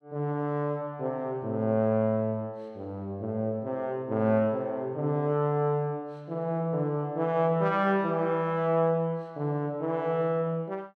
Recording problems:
none

